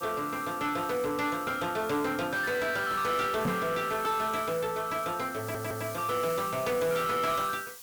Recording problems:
distortion; soft clipping, signal-to-distortion ratio 10 dB
hiss; slope +2 dB per octave, SNR 14 dB
microphone thump; at 3.5 s; peak +3 dB vs average level
audio stuttering; at 5.5 s

